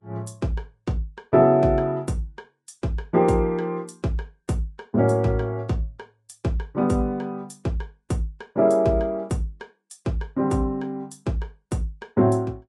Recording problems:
lossy codec; Vorbis, log-spectral distance 2 dB, nothing above 11 kHz

